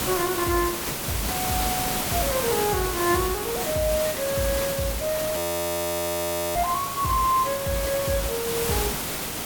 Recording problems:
hiss; slope -3 dB per octave, SNR 1 dB
audio freezing; at 5.5 s for 1 s

